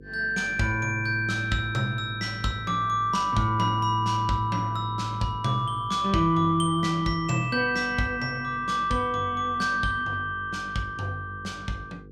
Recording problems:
hum; 50 Hz, harmonics up to 500 Hz, SNR 21 dB

